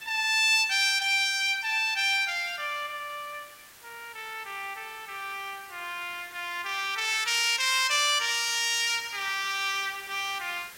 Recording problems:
hiss; SNR 22 dB

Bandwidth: 16 kHz